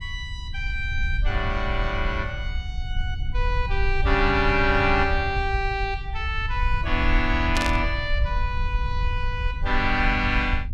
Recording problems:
rumble; below 70 Hz, SNR 3 dB
burst of static; at 7.5 s; peak +3 dB vs average level

